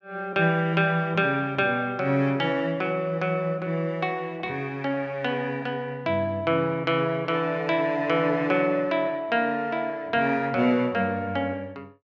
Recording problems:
none

